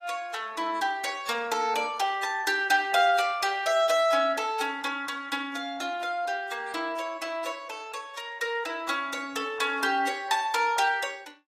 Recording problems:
lossy codec; AAC, log-spectral distance 3 dB, nothing above 14.7 kHz

